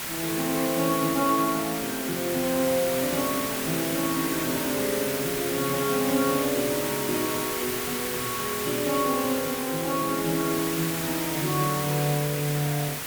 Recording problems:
hiss; slope -1 dB per octave, SNR 2 dB

